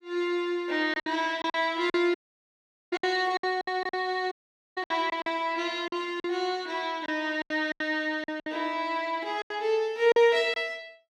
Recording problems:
packet loss; 11% of the sound replaced, filled with silence
audio cutting out; at 2 s for 1 s and at 4.5 s

